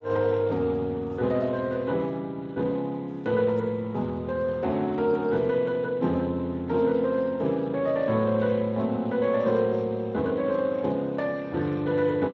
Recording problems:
lossy compression; Speex, log-spectral distance 2 dB

